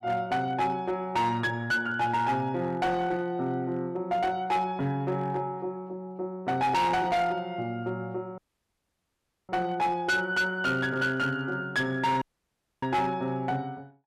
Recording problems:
distortion; hard clipping, signal-to-distortion ratio 10 dB
dropout; at 8.5 s for 1 s and at 12 s for 0.5 s

